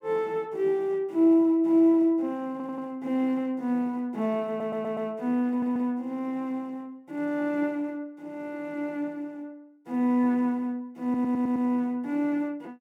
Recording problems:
stutter; 4 times, first at 2.5 s

